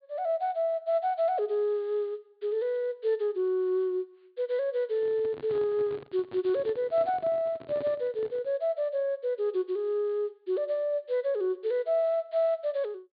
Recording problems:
treble missing; nothing above 4.6 kHz
handling noise; from 5 to 8.5 s; peak -8 dB vs average level

